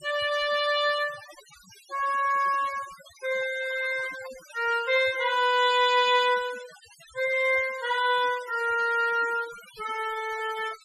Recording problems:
noise reduction artefacts; signal-to-artefact ratio 18 dB

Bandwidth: 13 kHz